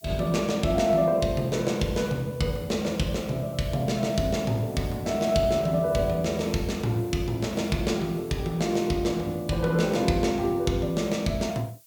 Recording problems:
background hiss; slope +4 dB per octave, SNR 24 dB

